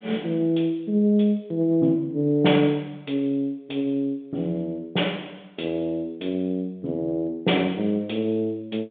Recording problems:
telephone audio; 150 Hz to 3.7 kHz, G.726

